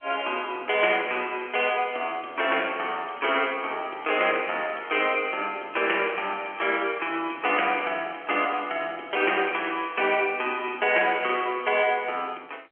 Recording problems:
telephone audio; 340 Hz to 3.1 kHz, G.711

